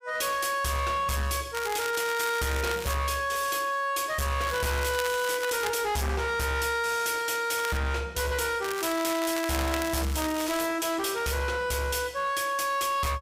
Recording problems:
distortion; hard clipping, uneven, signal-to-distortion ratio 7 dB
crackling; 4 times, first at 1.5 s; loose cable, SNR 10 dB

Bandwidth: 15.5 kHz